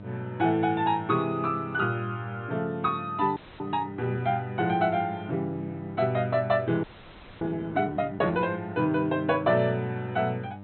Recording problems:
treble cut off; nothing above 4.1 kHz
hum; 50 Hz, harmonics up to 1.3 kHz, SNR 16 dB
audio freezing; at 3.5 s and at 7 s for 0.5 s

